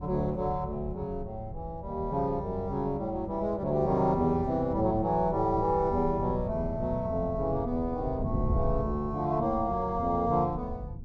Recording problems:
wind noise; below 120 Hz, SNR 10 dB

